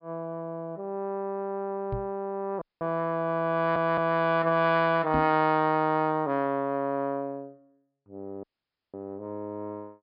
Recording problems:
treble missing; nothing above 5.5 kHz
knock on the microphone; at 2 s and at 5 s; peak -1 dB vs average level
audio cutting out; at 2.5 s and at 8.5 s for 0.5 s
stutter; at 3.5 s

